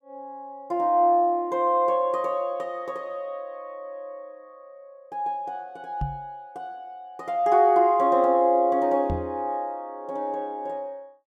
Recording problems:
microphone bump; at 6 s and at 9 s; peak -2 dB vs average level

